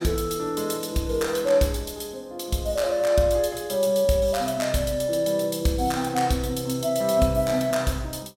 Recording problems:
none

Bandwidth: 16.5 kHz